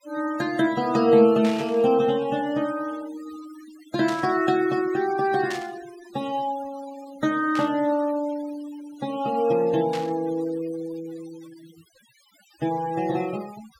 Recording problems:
denoising artefacts; signal-to-artefact ratio 20 dB
static burst; 5 times, first at 1.5 s; peak -7 dB vs average level

